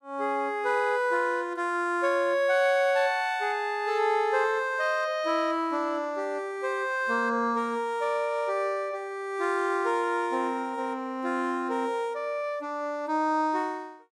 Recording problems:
none

